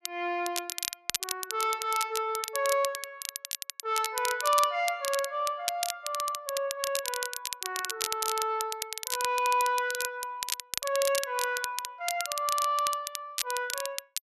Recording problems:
crackling; vinyl, SNR 4 dB

